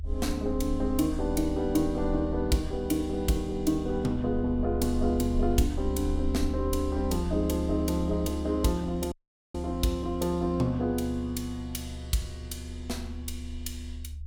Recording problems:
low-frequency rumble; below 74 Hz, strongest tone 74 Hz, SNR 7 dB
dropout; at 9 s

